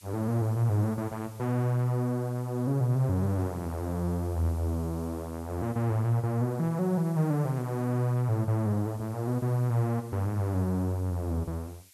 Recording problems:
hiss; SNR 24 dB

